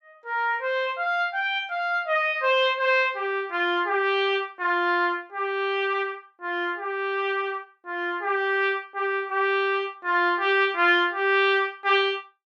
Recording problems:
none

